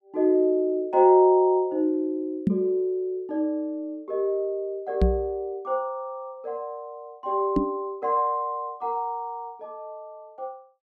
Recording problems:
microphone bump; at 2.5 s, at 5 s and at 7.5 s; peak +6 dB vs average level

